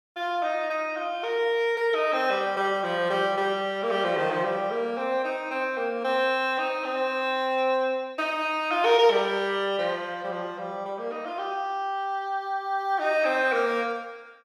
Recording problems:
none

